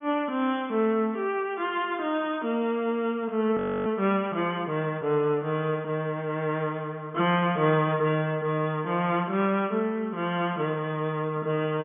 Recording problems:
treble missing; nothing above 3.5 kHz
frozen audio; at 3.5 s

